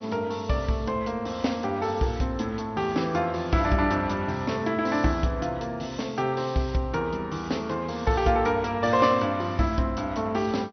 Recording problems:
codec artefacts; MP2, log-spectral distance 4 dB, nothing above 6 kHz

